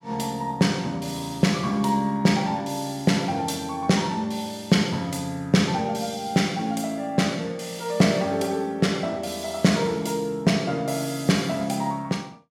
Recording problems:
none

